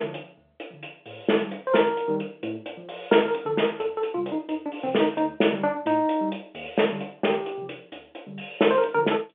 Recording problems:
telephone audio; 240 Hz to 3.5 kHz, G.711

